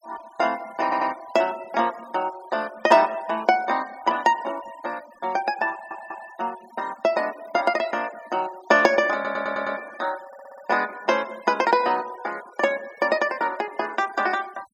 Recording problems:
noise reduction artefacts; signal-to-artefact ratio 21 dB
stutter; 4 times, first at 1 s

